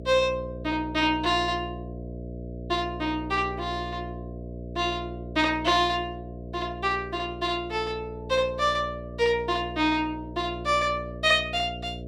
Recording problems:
hum; 60 Hz, harmonics up to 660 Hz, SNR 12 dB

